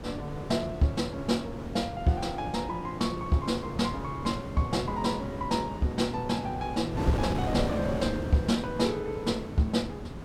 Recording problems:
wind on the microphone; below 450 Hz, SNR 7 dB

